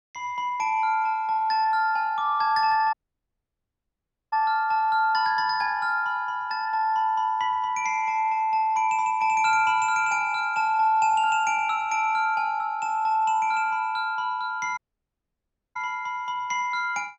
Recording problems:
dropout; at 3 s for 1.5 s and at 15 s for 1 s

